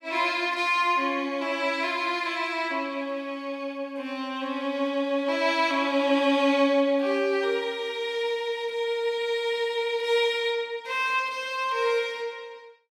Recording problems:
none

